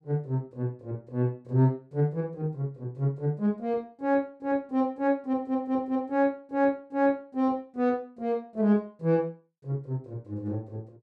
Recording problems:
none

